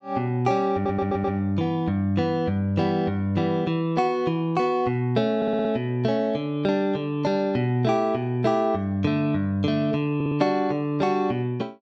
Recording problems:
stutter; at 0.5 s, at 5.5 s and at 10 s

